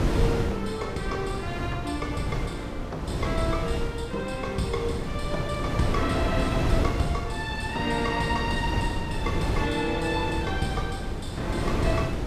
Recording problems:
wind on the microphone; below 350 Hz, SNR 0 dB

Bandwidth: 14.5 kHz